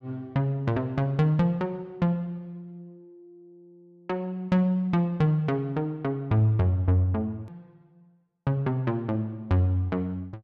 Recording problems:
click at an edit; at 7.5 s

